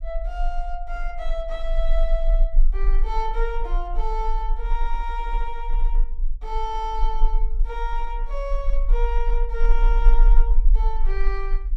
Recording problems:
low-frequency rumble; below 36 Hz, strongest tone 22 Hz, SNR -6 dB

